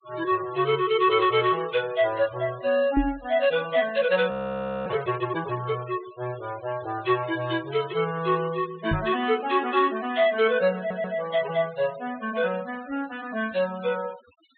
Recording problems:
treble cut off; nothing above 4 kHz
noise reduction artefacts; signal-to-artefact ratio 19 dB
knock on the microphone; at 3 s and at 9 s; peak +4 dB vs average level
frozen audio; at 4.5 s for 0.5 s
stutter; at 11 s

